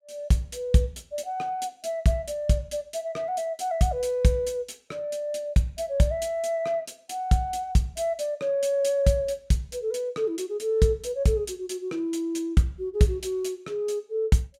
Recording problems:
none

